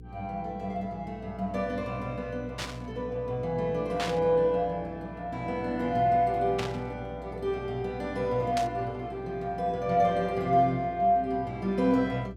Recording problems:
electrical hum; 60 Hz, harmonics up to 480 Hz, SNR 17 dB
burst of static; 4 times, first at 2.5 s; peak -1 dB vs average level

